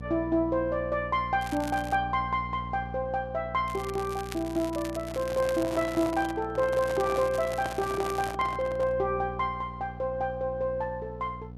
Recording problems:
hum; 60 Hz, harmonics up to 780 Hz, SNR 12 dB
crackling; at 1.5 s, from 3.5 to 6.5 s and from 6.5 to 8.5 s; loose cable, SNR 16 dB
handling noise; from 5 to 9 s; peak -3 dB vs average level

